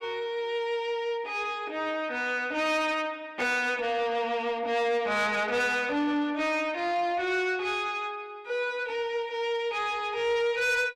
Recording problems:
distortion; soft clipping, signal-to-distortion ratio 11 dB

